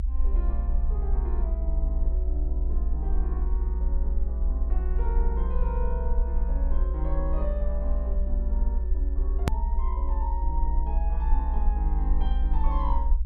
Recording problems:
rumble; below 58 Hz, SNR -10 dB
hard cut with a click; at 9.5 s

